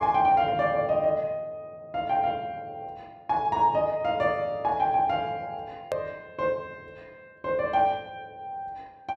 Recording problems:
hard cut with a click; at 6 s

